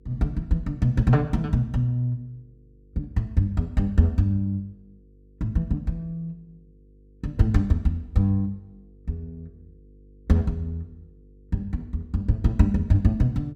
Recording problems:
hum; 50 Hz, harmonics up to 500 Hz, SNR 29 dB

